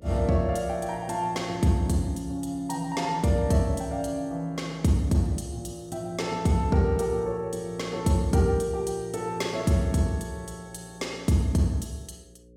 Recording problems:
hum; 60 Hz, harmonics up to 540 Hz, SNR 27 dB

